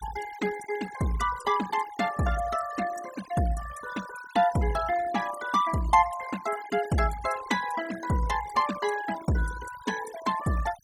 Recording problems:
noise reduction artefacts; signal-to-artefact ratio 13 dB

